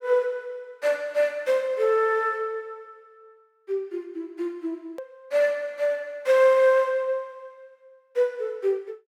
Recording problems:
click at an edit; at 5 s

